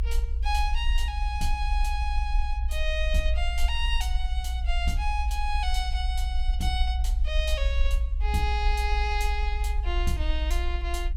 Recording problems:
rumble; below 60 Hz, SNR -3 dB

